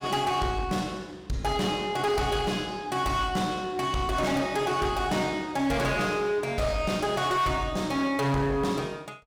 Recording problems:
distorted audio; hard clipping, uneven, signal-to-distortion ratio 11 dB

